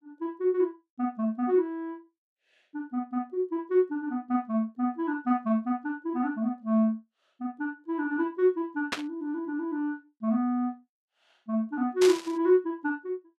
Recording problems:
static burst; at 9 s and at 12 s; peak +3 dB vs average level

